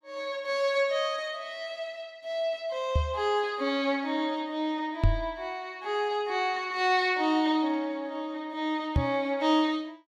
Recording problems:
microphone bump; at 3 s, at 5 s and at 9 s; peak +8 dB vs average level

